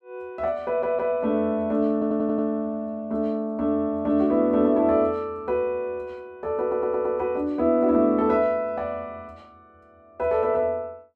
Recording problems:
stutter; at 0.5 s, at 2 s and at 6.5 s

